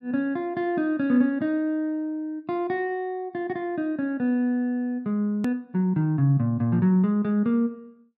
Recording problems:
edit click; at 5.5 s

